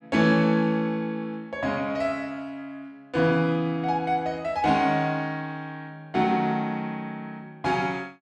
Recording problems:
none

